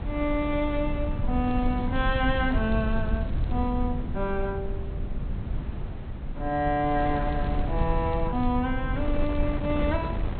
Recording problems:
treble cut off; nothing above 4.2 kHz
low-frequency rumble; below 94 Hz, SNR 4 dB
wind on the microphone; below 210 Hz, SNR 9 dB
crackling; from 1.5 to 3.5 s, from 7 to 8.5 s and at 9 s; loose cable, SNR 27 dB

